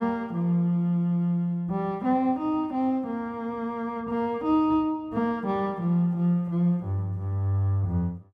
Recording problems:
none

